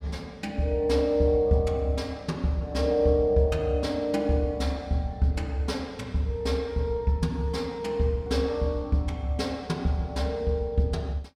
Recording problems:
none

